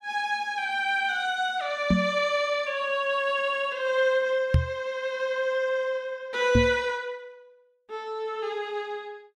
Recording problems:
microphone thump; at 2 s, at 4.5 s and at 6.5 s; peak +9 dB vs average level

